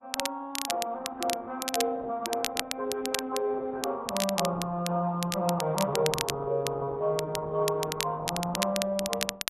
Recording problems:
lossy codec; Opus, then AAC, log-spectral distance 3 dB
crackling; vinyl, SNR 4 dB

